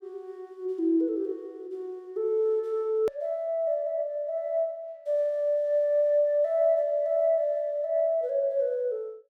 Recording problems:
hard cut with a click; at 3 s

